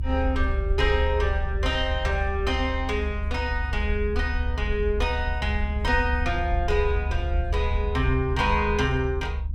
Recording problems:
low-frequency rumble; below 72 Hz, SNR 2 dB

